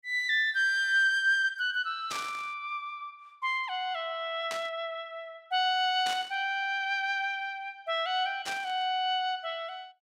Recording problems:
static burst; 4 times, first at 2 s; peak -3 dB vs average level

